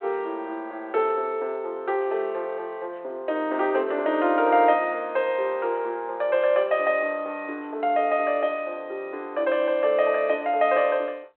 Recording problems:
telephone audio; 320 Hz to 3.1 kHz, G.726

